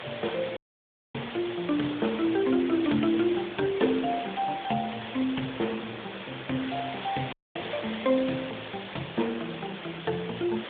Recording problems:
telephone audio; 170 Hz to 3.6 kHz, AMR-NB
background hiss; SNR 9 dB
wind noise; below 1.9 kHz, SNR 27 dB
dropout; at 0.5 s for 0.5 s and at 7.5 s
crackling; 4 times, first at 2 s; loose cable, SNR 27 dB

